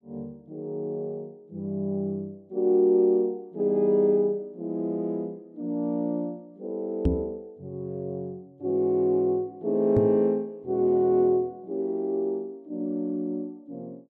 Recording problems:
microphone bump; at 7 s and at 10 s; peak +6 dB vs average level

